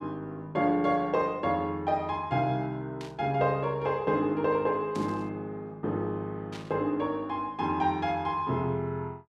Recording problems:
burst of static; at 3 s, at 5 s and at 6.5 s; peak -10 dB vs average level

